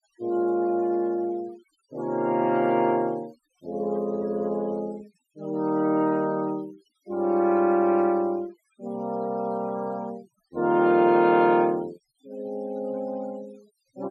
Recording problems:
denoising artefacts; signal-to-artefact ratio 27 dB

